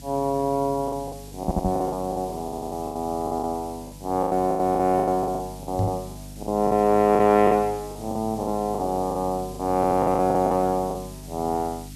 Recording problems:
hum; 50 Hz, harmonics up to 300 Hz, SNR 18 dB
hiss; SNR 21 dB
lost packets; 14% of the sound replaced, filled with the last packet
stutter; at 1.5 s, at 2.5 s and at 10 s
microphone thump; at 1.5 s and at 6 s; peak +2 dB vs average level

